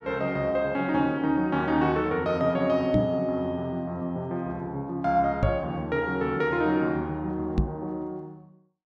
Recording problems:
knock on the microphone; at 3 s, at 5.5 s and at 7.5 s; peak +6 dB vs average level

